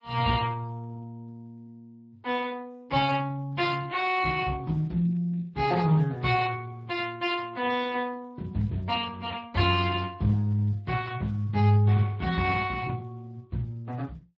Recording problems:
codec artefacts; MP3, then Speex, log-spectral distance 3 dB

